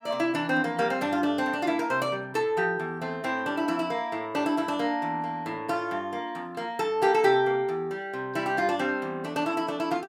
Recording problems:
none

